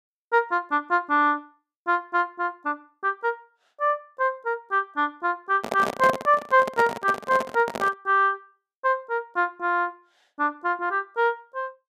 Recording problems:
microphone handling noise; from 5.5 to 8 s; peak 0 dB vs average level

